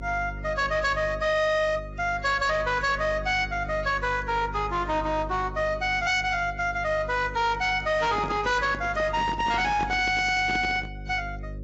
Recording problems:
lossy compression; AAC, log-spectral distance 2 dB, nothing above 7.1 kHz
distorted audio; hard clipping, uneven, signal-to-distortion ratio 11 dB
electrical hum; 50 Hz, harmonics up to 550 Hz, SNR 14 dB
microphone handling noise; from 8 to 11 s; peak -5 dB vs average level

